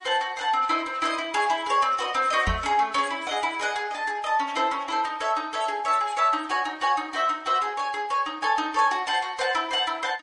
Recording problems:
lossy compression; MP3, log-spectral distance 2 dB, nothing above 8.7 kHz
microphone thump; at 2.5 s; peak 0 dB vs average level

